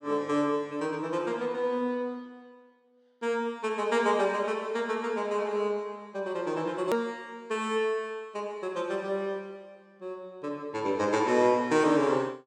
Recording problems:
edit click; at 7 s

